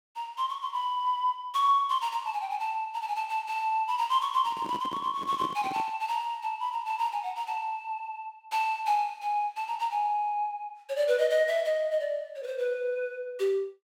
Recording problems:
handling noise; from 4.5 to 6 s; peak -4 dB vs average level

